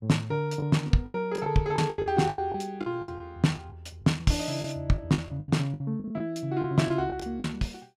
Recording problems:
packet loss; 13% of the sound replaced, filled with the last packet

